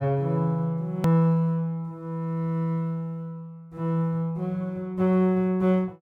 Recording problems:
edit click; at 1 s

